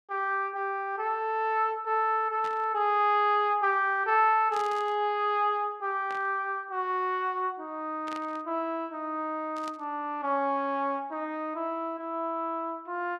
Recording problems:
static burst; 5 times, first at 2.5 s; peak -10 dB vs average level

